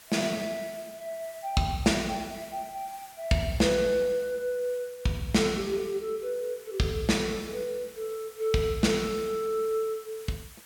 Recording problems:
hiss; slope 0 dB per octave, SNR 20 dB

